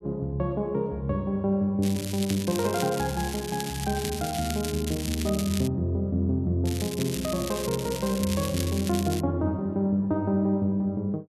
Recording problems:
crackle; from 2 to 5.5 s and from 6.5 to 9 s; loose cable, SNR 9 dB

